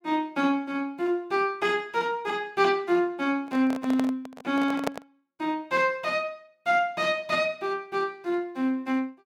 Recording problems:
handling noise; from 3.5 to 5 s; peak +2 dB vs average level

